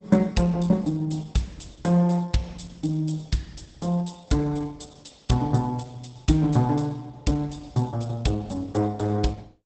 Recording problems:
lossy compression; Opus, log-spectral distance 5 dB, nothing above 8.2 kHz

